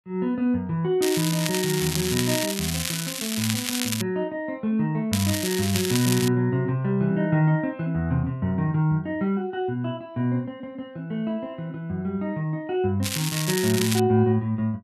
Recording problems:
crackling; from 1 to 4 s, from 5 to 6.5 s and at 13 s; loose cable, SNR 3 dB

